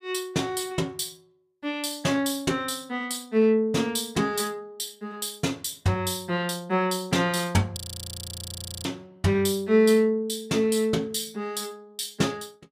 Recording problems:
audio freezing; at 8 s for 1 s

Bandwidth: 15.5 kHz